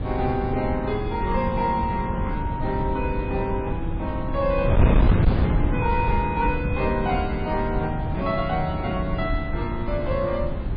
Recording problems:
codec artefacts; MP3, log-spectral distance 2 dB, nothing above 4 kHz
distorted audio; hard clipping, signal-to-distortion ratio 11 dB
wind noise; below 160 Hz, SNR 0 dB

